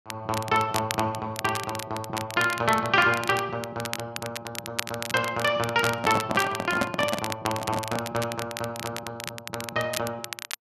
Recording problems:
crackling; vinyl, SNR 9 dB
microphone handling noise; from 6 to 8 s; peak +5 dB vs average level

